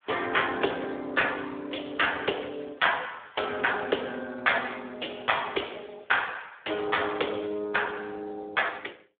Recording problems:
phone line; 300 Hz to 3.5 kHz, Speex

